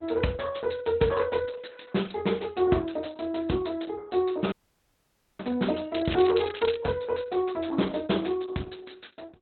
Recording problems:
lossy compression; Opus, log-spectral distance 7 dB, nothing above 4.1 kHz
dropout; at 4.5 s for 1 s
crackling; at 6 s; loose cable, SNR 10 dB

